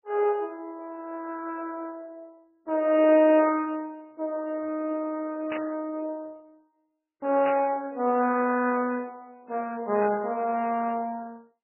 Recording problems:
lossy compression; MP2, then MP3, log-spectral distance 3 dB, nothing above 2.5 kHz
burst of static; at 5.5 s, at 7.5 s and at 10 s; peak -7 dB vs average level

